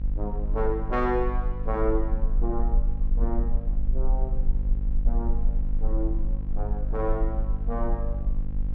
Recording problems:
hum; 50 Hz, harmonics up to 600 Hz, SNR 6 dB
rumble; below 50 Hz, SNR -2 dB

